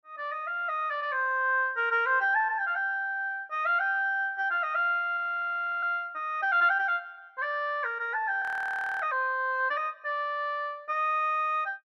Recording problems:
audio freezing; at 5 s for 0.5 s and at 8.5 s for 0.5 s

